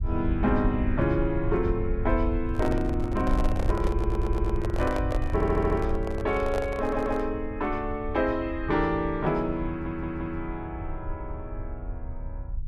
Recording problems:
rumble; below 82 Hz, SNR 5 dB
handling noise; from 2.5 to 7.5 s; peak -1 dB vs average level
audio stuttering; 4 times, first at 4 s

